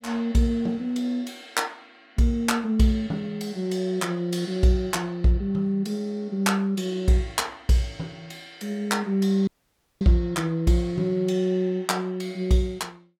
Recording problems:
dropout; at 9.5 s for 0.5 s

